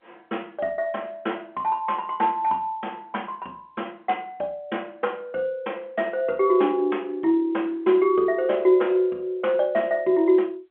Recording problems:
telephone audio; 240 Hz to 3.3 kHz, G.711

